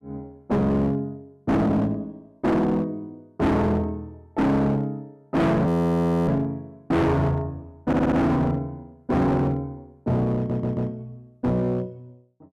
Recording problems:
distortion; hard clipping, uneven, signal-to-distortion ratio 6 dB
frozen audio; at 5.5 s for 0.5 s
stutter; at 8 s and at 10 s

